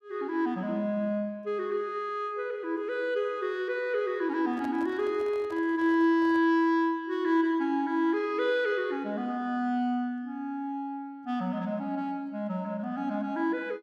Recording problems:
microphone handling noise; from 4.5 to 6.5 s; peak -11 dB vs average level

